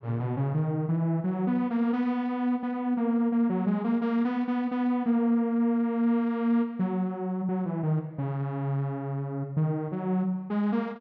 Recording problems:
none

